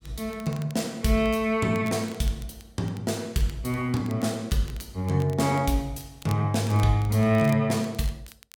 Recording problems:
crackle; vinyl, SNR 23 dB

